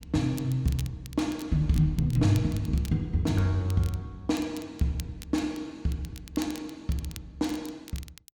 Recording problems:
crackle; vinyl, SNR 19 dB

